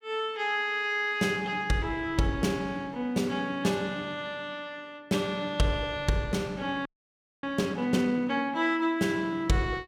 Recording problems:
frozen audio; at 7 s for 0.5 s

